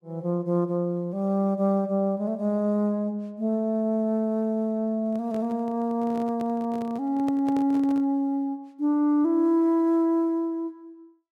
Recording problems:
microphone handling noise; from 5 to 8 s; peak -9 dB vs average level

